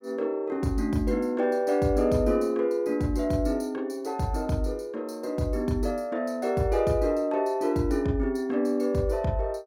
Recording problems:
none

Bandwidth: 17 kHz